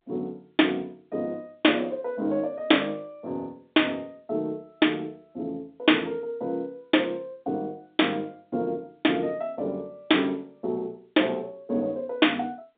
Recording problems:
phone line; 190 Hz to 3.7 kHz, G.711

